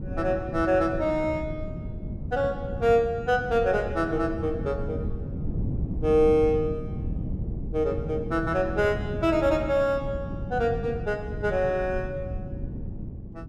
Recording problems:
wind on the microphone; below 190 Hz, SNR 8 dB

